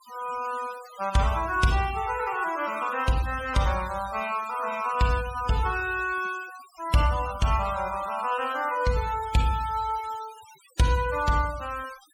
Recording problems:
denoising artefacts; signal-to-artefact ratio 16 dB

